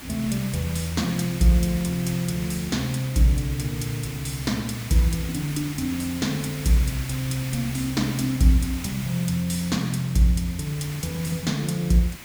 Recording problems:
hum; 60 Hz, harmonics up to 420 Hz, SNR 28 dB
background hiss; SNR 11 dB

